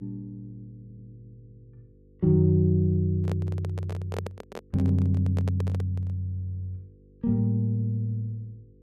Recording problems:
mains hum; 50 Hz, harmonics up to 500 Hz, SNR 30 dB
audio stuttering; at 1 s
handling noise; from 3 to 6 s; peak -4 dB vs average level

